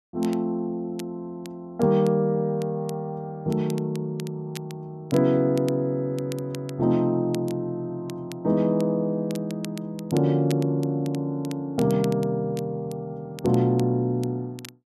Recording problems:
crackling; vinyl, SNR 21 dB

